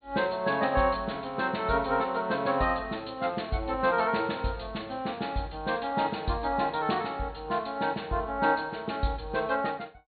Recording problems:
low-pass filter; nothing above 4.4 kHz

